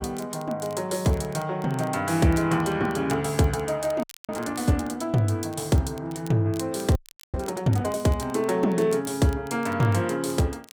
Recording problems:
crackling; vinyl, SNR 24 dB
audio freezing; at 4 s and at 7 s

